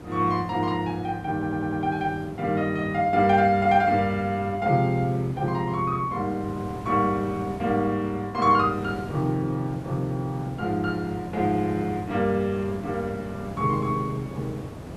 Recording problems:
background hiss; slope -8 dB per octave, SNR 14 dB
audio stuttering; at 1.5 s

